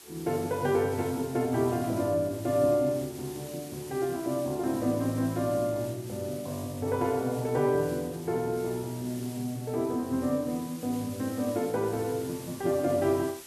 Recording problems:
hiss; slope 0 dB per octave, SNR 16 dB

